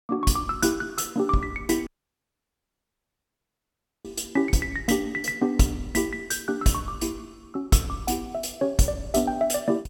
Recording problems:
audio cutting out; at 2 s for 2 s

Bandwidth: 18 kHz